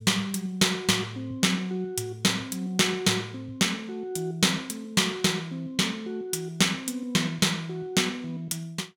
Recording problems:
none

